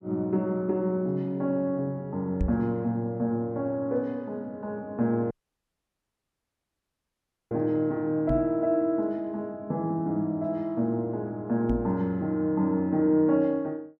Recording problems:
microphone thump; at 2.5 s, at 8.5 s and at 12 s; peak +3 dB vs average level
audio cutting out; at 5.5 s for 2 s

